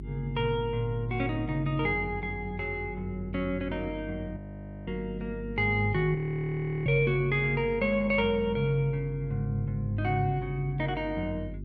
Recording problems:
hum; 50 Hz, harmonics up to 400 Hz, SNR 12 dB
audio freezing; at 4.5 s for 0.5 s and at 6 s for 0.5 s

